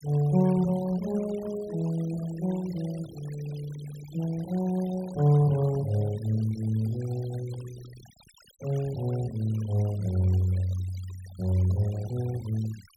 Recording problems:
noise reduction artefacts; signal-to-artefact ratio 21 dB

